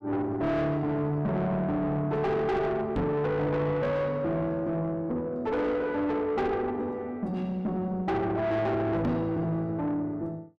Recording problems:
distortion; soft clipping, signal-to-distortion ratio 7 dB
microphone bump; at 3 s and at 9 s; peak +5 dB vs average level

